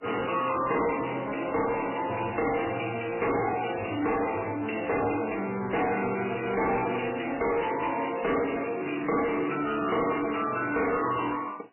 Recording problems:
lossy codec; MP3, log-spectral distance 11 dB, nothing above 2.9 kHz
distortion; soft clipping, signal-to-distortion ratio 6 dB

